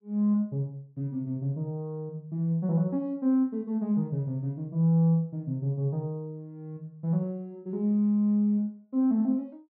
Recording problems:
none

